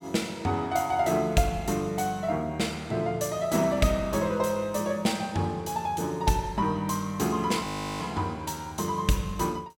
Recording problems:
audio freezing; at 7.5 s

